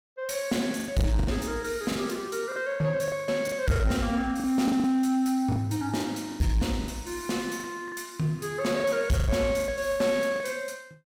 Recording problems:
distortion; soft clipping, signal-to-distortion ratio 11 dB
packet loss; 12% of the sound replaced, filled with the last packet

